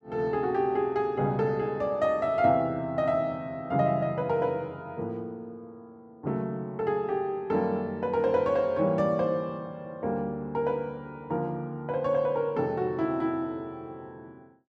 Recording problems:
none

